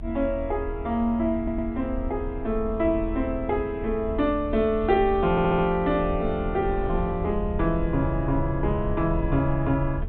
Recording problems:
low-pass filter; nothing above 4 kHz
low-frequency rumble; below 78 Hz, SNR 9 dB
wind noise; below 410 Hz, SNR 20 dB
stutter; at 1.5 s and at 5.5 s

